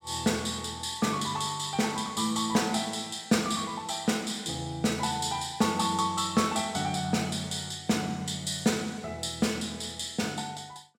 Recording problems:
none

